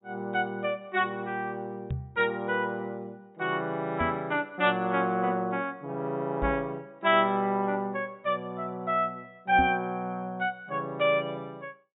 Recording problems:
treble cut off; nothing above 4 kHz
microphone bump; 4 times, first at 2 s; peak 0 dB vs average level

